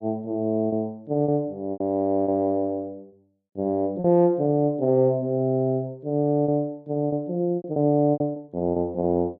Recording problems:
packet loss; 7% of the sound replaced, filled with repeated pitch periods

